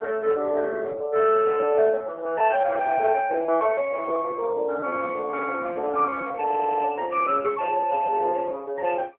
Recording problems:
telephone audio; 280 Hz to 3.3 kHz, AMR-NB
packet loss; 13% of the sound replaced, filled with repeated pitch periods
stutter; at 6.5 s

